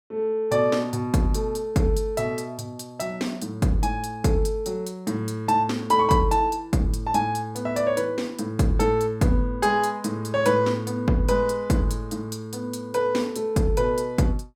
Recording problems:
none

